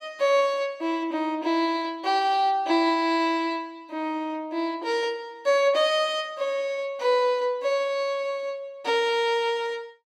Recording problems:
none

